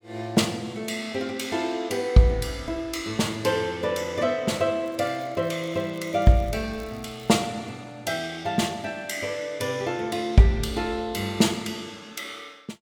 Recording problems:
crackling; from 5 to 7.5 s; loose cable, SNR 28 dB

